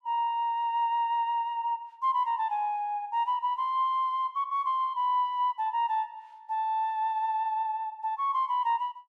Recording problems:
none

